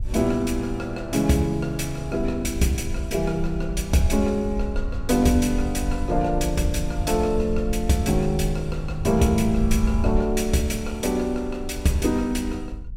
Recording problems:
low-frequency rumble; below 68 Hz, SNR 8 dB

